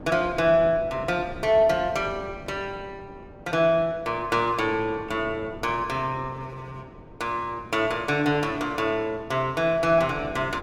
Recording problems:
wind on the microphone; below 460 Hz, SNR 18 dB

